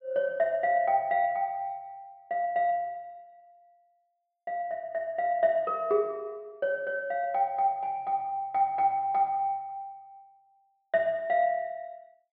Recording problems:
low-pass filter; nothing above 5.5 kHz

